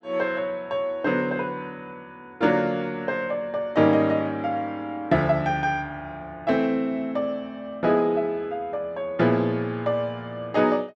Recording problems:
none

